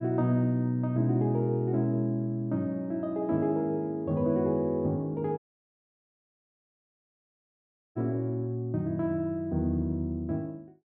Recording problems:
dropout; at 5.5 s for 2.5 s

